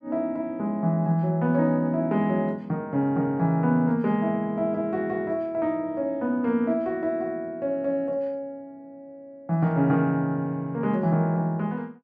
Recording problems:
none

